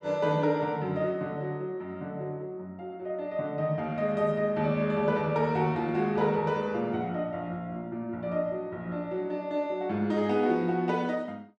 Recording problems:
none

